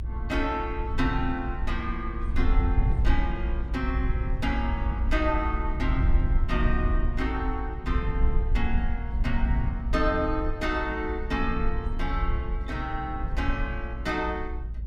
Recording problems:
rumble; below 62 Hz, SNR -1 dB

